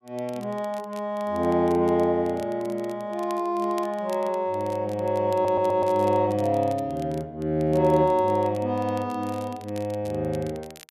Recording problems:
crackle; vinyl, SNR 25 dB
audio stuttering; at 5.5 s

